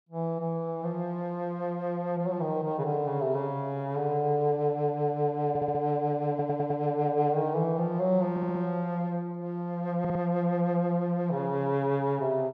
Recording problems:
stutter; 4 times, first at 5.5 s

